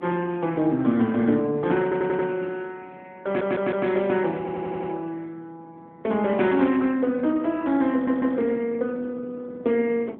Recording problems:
phone line; 150 Hz to 3.4 kHz, AMR-NB
wind noise; below 430 Hz, SNR 22 dB
stutter; 4 times, first at 2 s

